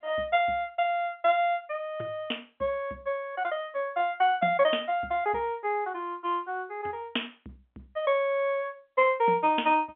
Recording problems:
telephone audio; 260 Hz to 3.3 kHz, G.711

